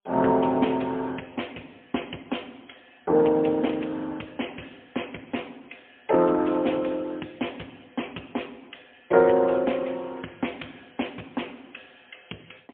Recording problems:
telephone audio; 190 Hz to 3.3 kHz, AMR-NB, then MP3

